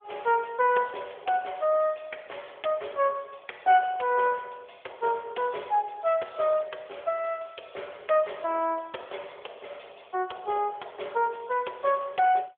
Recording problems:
telephone audio; 340 Hz to 3.4 kHz, AMR-NB

